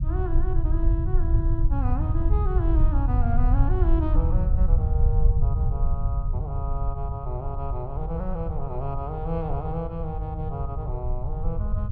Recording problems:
low-frequency rumble; below 78 Hz, SNR -7 dB

